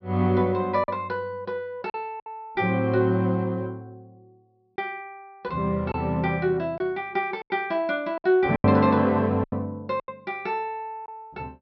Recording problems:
low-pass filter; nothing above 5.5 kHz
packet loss; 6% of the sound replaced, filled with silence

